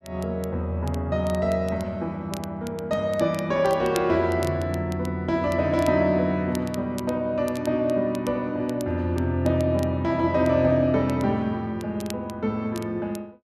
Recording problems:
crackle; vinyl, SNR 21 dB

